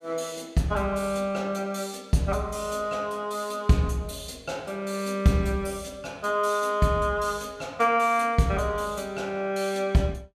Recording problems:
none

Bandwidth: 14.5 kHz